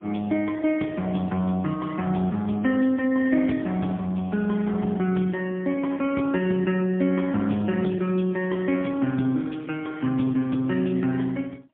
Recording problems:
telephone audio; 130 Hz to 3.4 kHz, AMR-NB, then MP3

